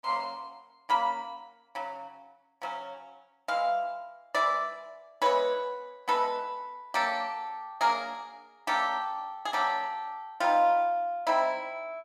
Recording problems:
none

